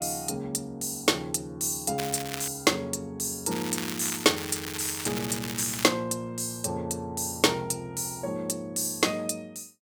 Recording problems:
crackle; at 2 s and from 3.5 to 6 s; loose cable, SNR 7 dB

